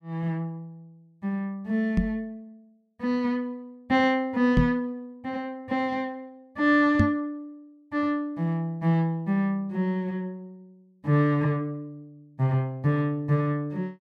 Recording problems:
knock on the microphone; at 2 s, at 4.5 s and at 7 s; peak +8 dB vs average level

